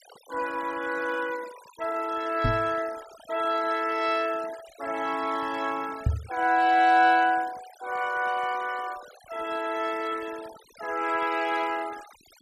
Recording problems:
denoising artefacts; signal-to-artefact ratio 18 dB
microphone bump; at 2.5 s and at 6 s; peak +5 dB vs average level

